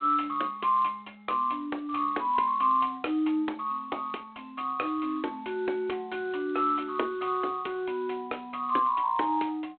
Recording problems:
phone line; 260 Hz to 3.4 kHz, G.726

